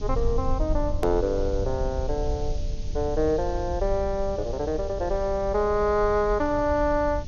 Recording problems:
low-pass filter; nothing above 6.8 kHz
background hiss; slope +4 dB per octave, SNR 23 dB
low-frequency rumble; below 66 Hz, SNR 7 dB
click at an edit; at 1 s

